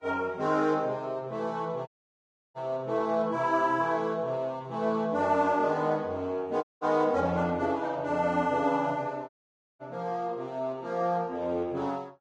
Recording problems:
codec artefacts; Vorbis, log-spectral distance 2 dB, nothing above 10.1 kHz
dropout; at 2 s for 0.5 s, at 6.5 s and at 9.5 s for 0.5 s

